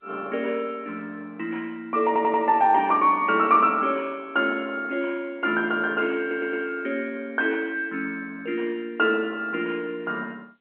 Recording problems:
telephone audio; 220 Hz to 3.2 kHz, G.711
stutter; at 2 s and at 6 s

